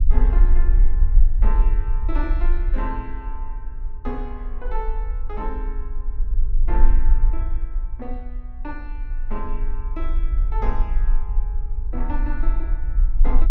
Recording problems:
low-frequency rumble; below 40 Hz, strongest tone 20 Hz, SNR -10 dB

